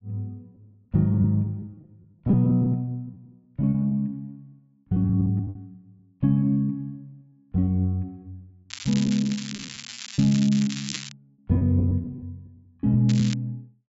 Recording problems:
low-pass filter; nothing above 8 kHz
packet loss; 13% of the sound replaced, filled with repeated pitch periods
crackling; from 8.5 to 11 s and at 13 s; loose cable, SNR 12 dB

